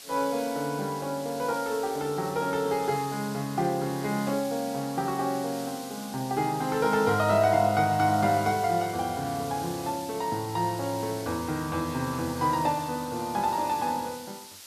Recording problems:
hiss; slope +2 dB per octave, SNR 14 dB

